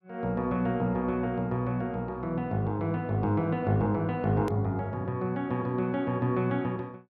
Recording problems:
click at an edit; at 4.5 s

